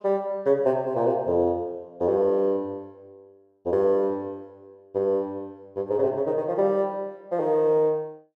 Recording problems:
none

